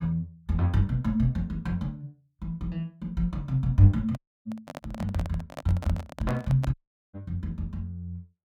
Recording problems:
handling noise; from 4 to 6.5 s; peak -3 dB vs average level
dropout; at 4 s and at 6.5 s

